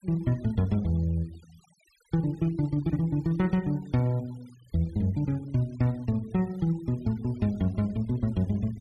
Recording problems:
denoising artefacts; signal-to-artefact ratio 26 dB

